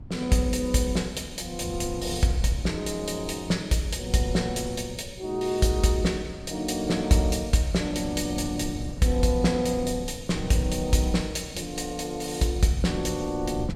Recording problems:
wind on the microphone; below 150 Hz, SNR 14 dB

